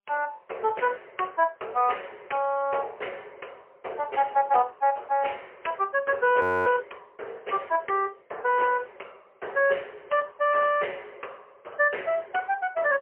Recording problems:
telephone audio; 340 Hz to 3.1 kHz, AMR-NB, then MP3
frozen audio; at 6.5 s

